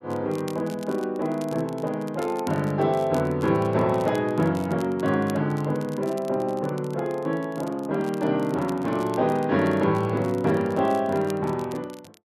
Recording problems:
crackle; vinyl, SNR 23 dB

